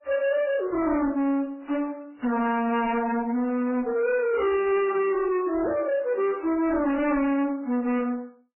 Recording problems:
codec artefacts; MP3, then MP3, log-spectral distance 3 dB, nothing above 2.8 kHz
distortion; hard clipping, signal-to-distortion ratio 6 dB

